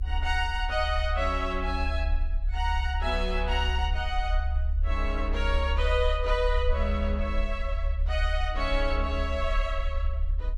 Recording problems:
low-frequency rumble; below 70 Hz, strongest tone 36 Hz, SNR 0 dB

